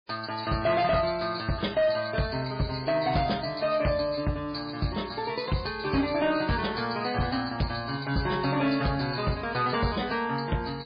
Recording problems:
lossy compression; MP3, log-spectral distance 8 dB, nothing above 4.8 kHz
distorted audio; hard clipping, signal-to-distortion ratio 12 dB

